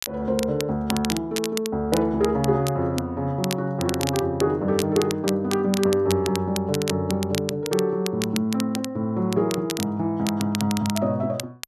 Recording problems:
crackling; vinyl, SNR 10 dB

